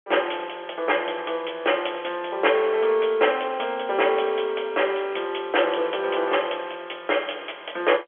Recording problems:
telephone audio; 340 Hz to 3.4 kHz, G.711

